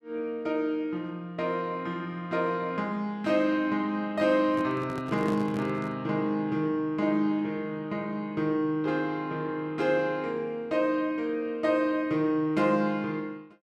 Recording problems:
handling noise; from 4.5 to 6 s; peak -3 dB vs average level

